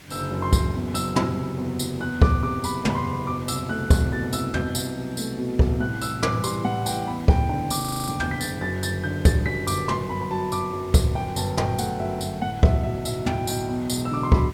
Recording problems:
background hiss; SNR 22 dB
frozen audio; at 8 s

